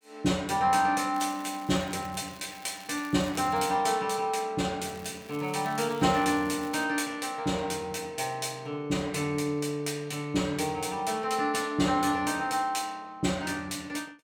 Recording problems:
crackling; from 1 to 4 s and from 5 to 7 s; loose cable, SNR 21 dB

